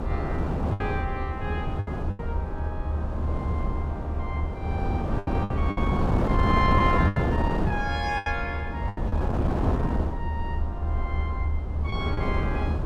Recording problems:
low-frequency rumble; below 78 Hz, strongest tone 74 Hz, SNR 0 dB
wind on the microphone; below 410 Hz, SNR -3 dB
packet loss; 6% of the sound replaced, filled with the last packet

